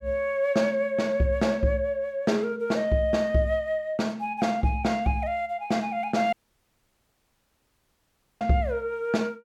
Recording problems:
audio cutting out; at 6.5 s for 2 s

